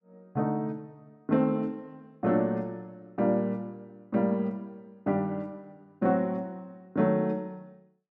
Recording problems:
none

